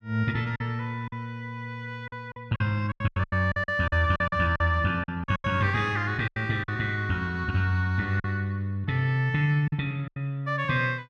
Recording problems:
packet loss; 10% of the sound replaced, filled with silence

